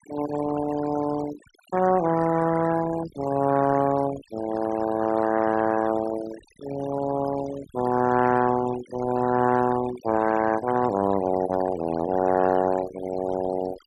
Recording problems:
denoising artefacts; signal-to-artefact ratio 13 dB

